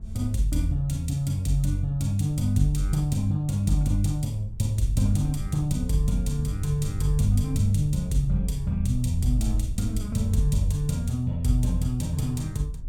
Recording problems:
wind on the microphone; below 86 Hz, SNR 10 dB

